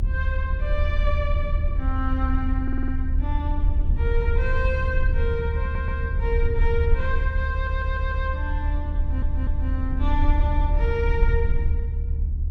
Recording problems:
rumble; below 74 Hz, SNR -5 dB
wind on the microphone; below 120 Hz, SNR 6 dB
stutter; 4 times, first at 2.5 s

